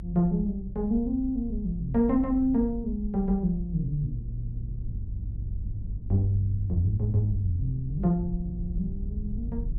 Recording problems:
low-frequency rumble; below 78 Hz, SNR 8 dB

